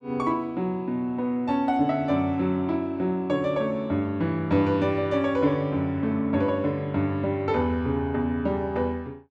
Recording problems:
none

